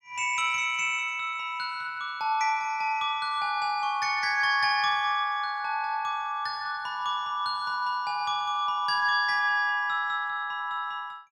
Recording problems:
none

